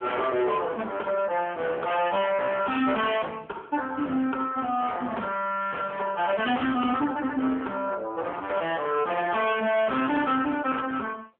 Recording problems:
telephone audio; 220 Hz to 3.4 kHz, AMR-NB
distortion; hard clipping, signal-to-distortion ratio 9 dB

